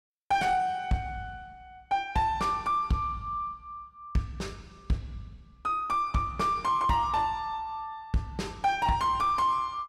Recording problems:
distorted audio; soft clipping, signal-to-distortion ratio 10 dB

